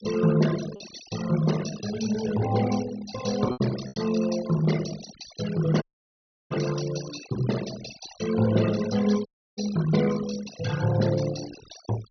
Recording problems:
low-pass filter; nothing above 6.1 kHz
noise reduction artefacts; signal-to-artefact ratio 11 dB
packet loss; 1.8% of the sound replaced, filled with repeated pitch periods
dropout; at 6 s for 0.5 s and at 9.5 s

